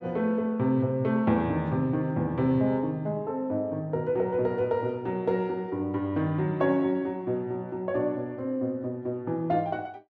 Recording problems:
none

